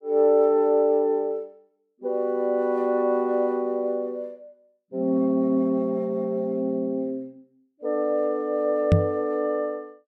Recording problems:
knock on the microphone; at 9 s; peak +9 dB vs average level

